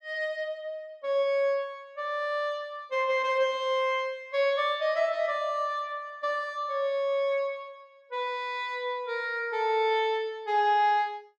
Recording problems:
none

